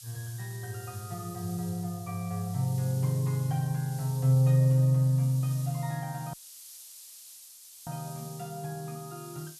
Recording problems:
background hiss; SNR 17 dB
audio cutting out; at 6.5 s for 1.5 s

